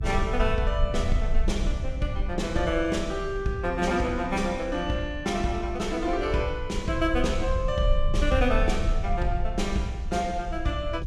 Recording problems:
electrical hum; 50 Hz, harmonics up to 500 Hz, SNR 22 dB
rumble; below 60 Hz, SNR 5 dB

